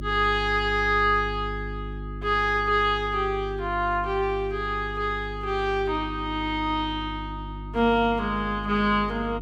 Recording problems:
hum; 50 Hz, harmonics up to 350 Hz, SNR 11 dB

